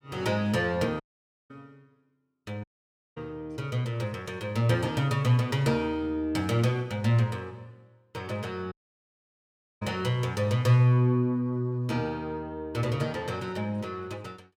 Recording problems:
audio cutting out; at 1 s for 0.5 s, at 2.5 s for 0.5 s and at 8.5 s for 1 s

